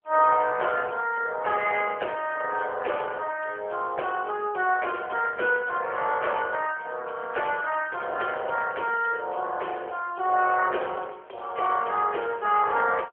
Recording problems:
telephone audio; 340 Hz to 3.2 kHz, AMR-NB

